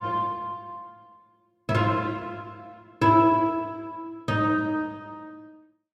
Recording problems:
none

